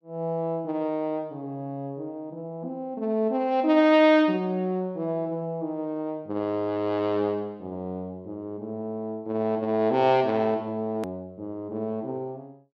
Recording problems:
click at an edit; at 11 s

